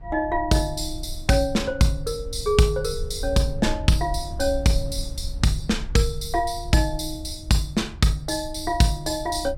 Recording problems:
low-frequency rumble; below 70 Hz, SNR 12 dB

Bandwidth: 17 kHz